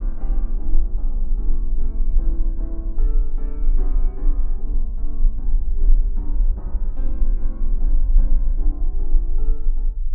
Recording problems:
rumble; below 32 Hz, strongest tone 18 Hz, SNR -16 dB

